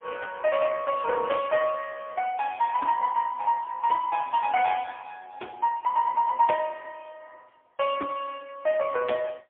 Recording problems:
phone line; 370 Hz to 3.4 kHz, AMR-NB, then MP3

